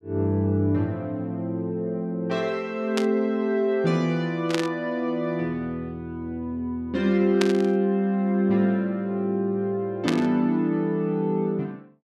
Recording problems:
burst of static; 4 times, first at 3 s; peak +2 dB vs average level

